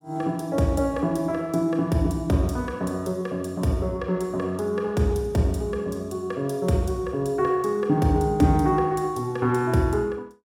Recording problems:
none

